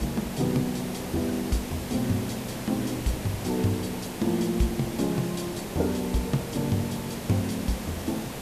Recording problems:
hiss; SNR 7 dB

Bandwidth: 14.5 kHz